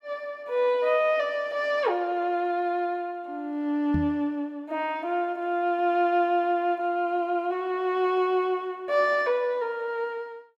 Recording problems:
microphone bump; at 4 s; peak 0 dB vs average level

